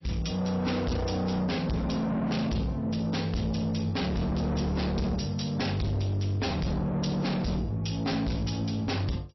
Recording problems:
lossy compression; MP3, log-spectral distance 5 dB, nothing above 5.7 kHz
distortion; soft clipping, signal-to-distortion ratio 6 dB

